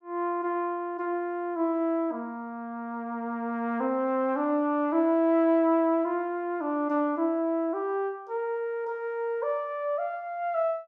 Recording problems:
none

